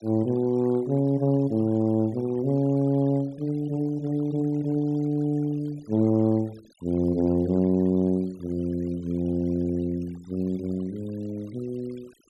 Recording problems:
denoising artefacts; signal-to-artefact ratio 28 dB

